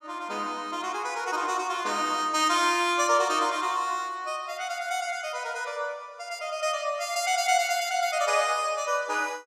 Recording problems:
none

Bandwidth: 15.5 kHz